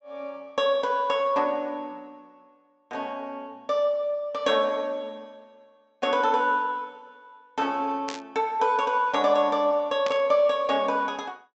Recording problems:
low-pass filter; nothing above 8 kHz
burst of static; at 8 s and at 10 s; peak -5 dB vs average level

